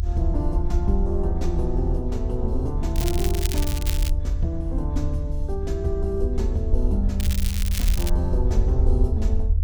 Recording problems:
low-frequency rumble; below 76 Hz, SNR -4 dB
crackling; from 3 to 4 s and at 7 s; loose cable, SNR 4 dB

